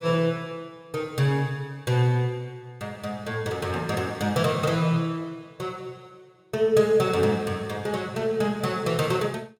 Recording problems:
none

